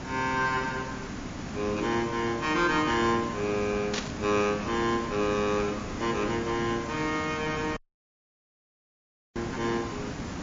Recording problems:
lossy compression; MP3, log-spectral distance 9 dB
hiss; slope -5 dB per octave, SNR 8 dB
burst of static; at 4 s; peak +1 dB vs average level
dropout; at 8 s for 1.5 s

